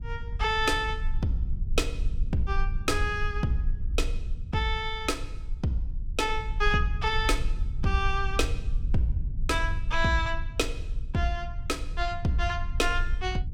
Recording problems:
rumble; below 58 Hz, SNR 4 dB

